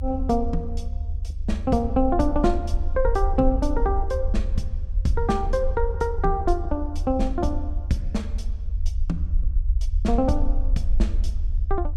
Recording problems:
low-frequency rumble; below 60 Hz, SNR 2 dB

